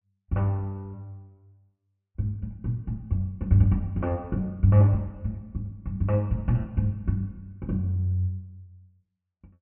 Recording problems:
treble missing; nothing above 3 kHz

